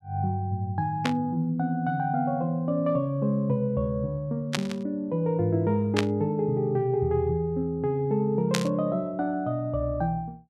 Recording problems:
static burst; 4 times, first at 1 s; peak +4 dB vs average level

